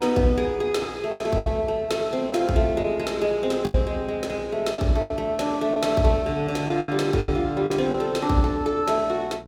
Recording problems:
hum; 60 Hz, harmonics up to 1.5 kHz, SNR 23 dB
packet loss; 7% of the sound replaced, filled with the last packet

